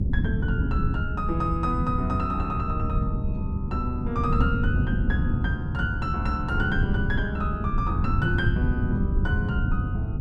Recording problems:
rumble; below 150 Hz, SNR -3 dB

